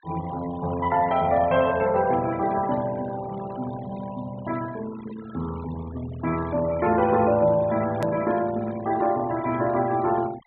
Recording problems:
treble cut off; nothing above 4 kHz
noise reduction artefacts; signal-to-artefact ratio 18 dB
hard cut with a click; at 8 s

